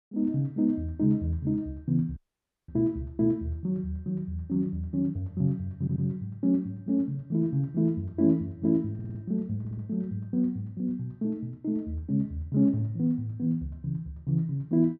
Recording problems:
dropout; at 2 s for 0.5 s
audio stuttering; at 6 s, at 9 s and at 9.5 s

